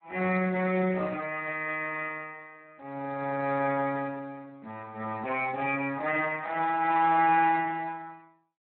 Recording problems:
phone line; 240 Hz to 3.3 kHz, Speex

